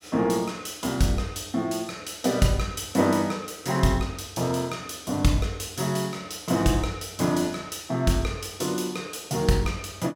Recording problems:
none

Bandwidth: 16.5 kHz